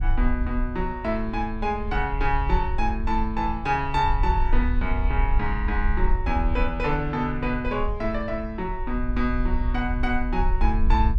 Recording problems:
rumble; below 54 Hz, SNR 2 dB

